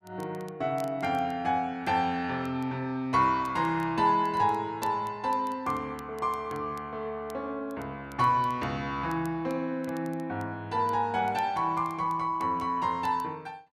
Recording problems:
crackle; vinyl, SNR 27 dB

